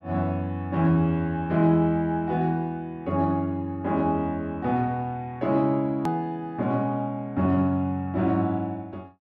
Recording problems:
click at an edit; at 6 s

